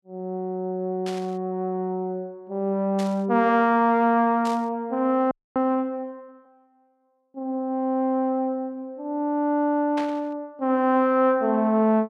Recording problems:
static burst; 4 times, first at 1 s; peak -8 dB vs average level
audio freezing; at 5.5 s

